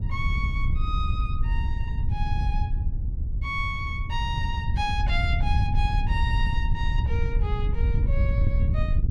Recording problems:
wind noise; below 90 Hz, SNR -6 dB

